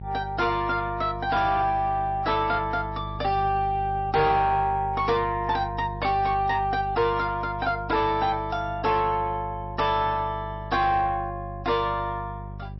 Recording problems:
lossy codec; MP3, log-spectral distance 2 dB, nothing above 5.7 kHz
distorted audio; soft clipping, signal-to-distortion ratio 11 dB
electrical hum; 50 Hz, harmonics up to 400 Hz, SNR 12 dB

